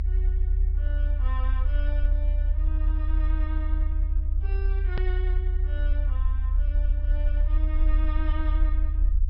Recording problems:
treble cut off; nothing above 5.4 kHz
rumble; below 68 Hz, strongest tone 40 Hz, SNR -15 dB
edit click; at 5 s

